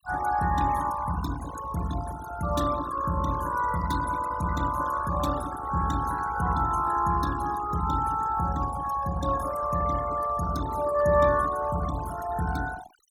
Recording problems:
noise reduction artefacts; signal-to-artefact ratio 13 dB

